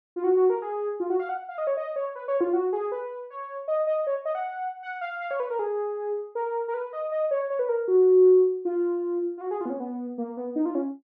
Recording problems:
none

